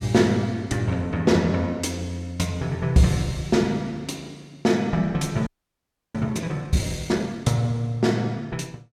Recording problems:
frozen audio; at 5.5 s for 0.5 s

